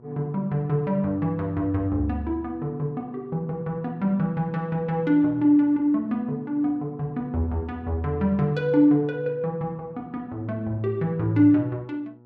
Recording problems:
hum; 60 Hz, harmonics up to 1.3 kHz, SNR 26 dB

